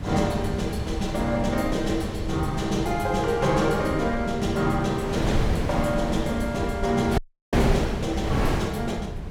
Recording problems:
low-frequency rumble; below 100 Hz, SNR 9 dB
wind noise; below 540 Hz, SNR 5 dB
dropout; at 7 s

